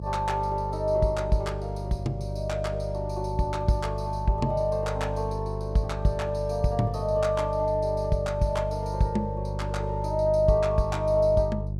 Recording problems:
hum; 50 Hz, harmonics up to 400 Hz, SNR 6 dB

